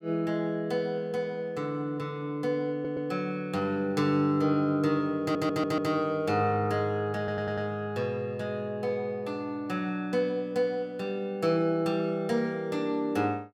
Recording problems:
stutter; at 2.5 s, at 5 s and at 7 s

